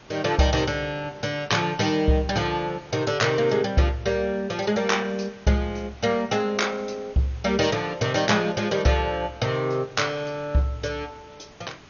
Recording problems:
lossy codec; MP2, log-spectral distance 5 dB, nothing above 6.7 kHz
background hiss; slope -4 dB per octave, SNR 24 dB

